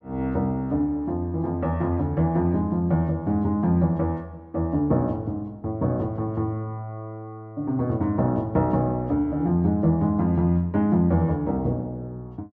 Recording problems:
none

